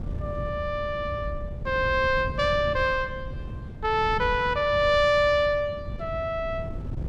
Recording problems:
wind on the microphone; below 150 Hz, SNR 11 dB

